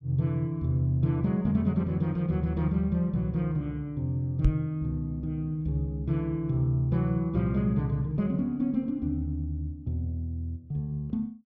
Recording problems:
microphone thump; at 4.5 s; peak +8 dB vs average level

